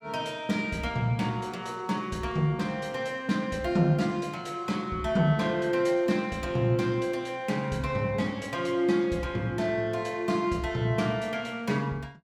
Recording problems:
none

